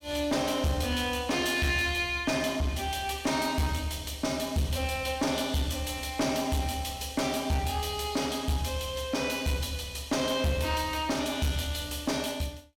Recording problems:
distorted audio; soft clipping, signal-to-distortion ratio 11 dB

